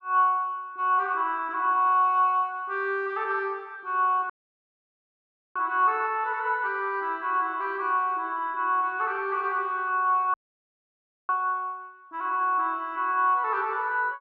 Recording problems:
audio cutting out; at 4.5 s for 1.5 s and at 10 s for 1 s

